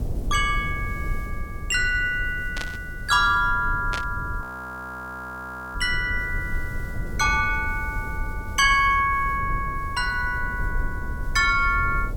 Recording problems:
hiss; SNR 29 dB
rumble; below 88 Hz, SNR 10 dB
burst of static; at 2.5 s and at 4 s; peak -4 dB vs average level
audio freezing; at 4.5 s for 1.5 s

